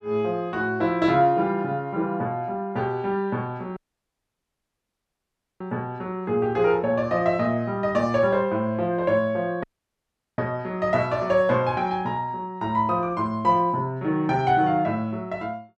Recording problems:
audio cutting out; at 4 s for 2 s and at 9.5 s for 0.5 s

